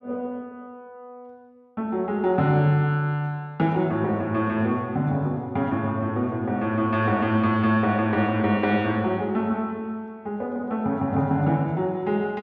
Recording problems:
none

